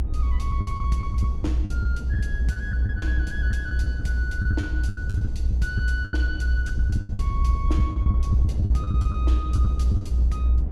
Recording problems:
rumble; below 74 Hz, strongest tone 62 Hz, SNR -10 dB
wind noise; below 220 Hz, SNR 4 dB
lost packets; 13% of the sound replaced, filled with the last packet

